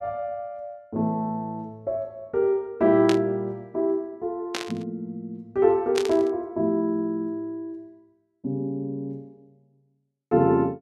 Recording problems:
burst of static; at 3 s, at 4.5 s and at 6 s; peak +1 dB vs average level

